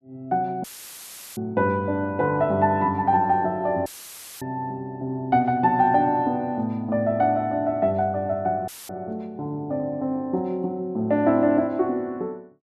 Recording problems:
dropout; at 0.5 s for 0.5 s, at 4 s for 0.5 s and at 8.5 s; filled with static

